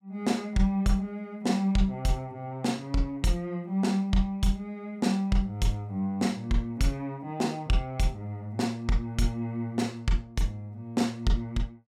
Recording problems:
none

